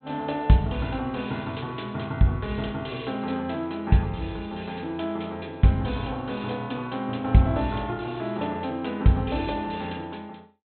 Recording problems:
low-pass filter; nothing above 4 kHz

